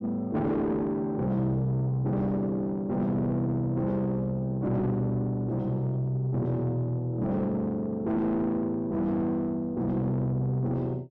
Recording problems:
distorted audio; soft clipping, signal-to-distortion ratio 11 dB

